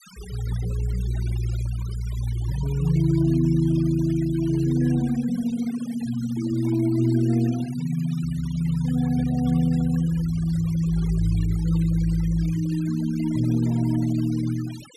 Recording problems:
denoising artefacts; signal-to-artefact ratio 20 dB

